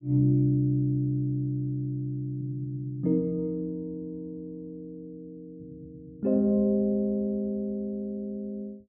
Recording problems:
treble cut off; nothing above 3.2 kHz

